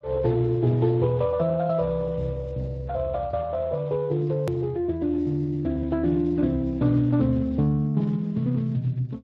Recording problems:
lossy codec; Speex, log-spectral distance 2 dB, nothing above 13.1 kHz
hard cut with a click; at 4.5 s

